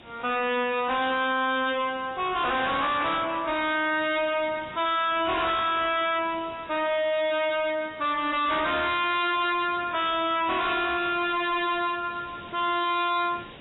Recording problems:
lossy codec; AAC, log-spectral distance 8 dB, nothing above 3.9 kHz
distorted audio; soft clipping, signal-to-distortion ratio 5 dB
hiss; SNR 22 dB

